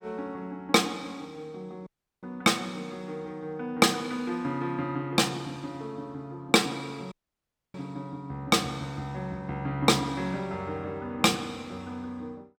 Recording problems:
dropout; at 2 s and at 7 s for 0.5 s

